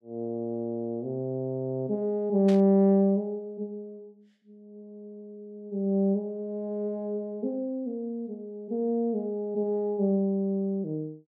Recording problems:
static burst; at 2.5 s; peak -9 dB vs average level

